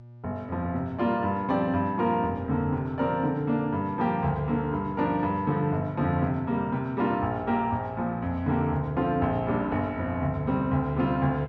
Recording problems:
electrical hum; 60 Hz, harmonics up to 840 Hz, SNR 19 dB

